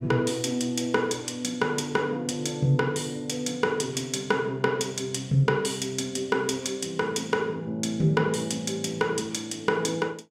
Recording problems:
none

